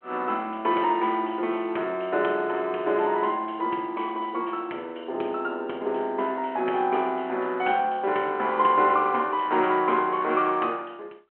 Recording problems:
phone line; 280 Hz to 3.4 kHz, G.726

